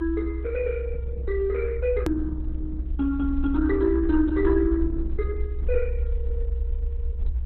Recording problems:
codec artefacts; Opus, log-spectral distance 2 dB, nothing above 13.1 kHz
low-frequency rumble; below 66 Hz, SNR 4 dB
click at an edit; at 2 s

